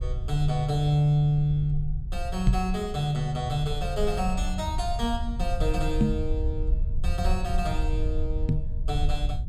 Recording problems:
low-frequency rumble; below 66 Hz, SNR 3 dB
microphone bump; at 2.5 s, at 6 s and at 8.5 s; peak +9 dB vs average level

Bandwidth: 15 kHz